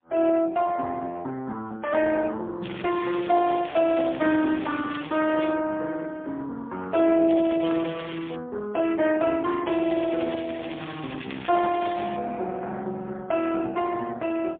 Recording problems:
telephone audio; 170 Hz to 3.2 kHz, AMR-NB, then MP3
crackling; from 2.5 to 5.5 s, from 7.5 to 8.5 s and from 9.5 to 12 s; loose cable, SNR 14 dB

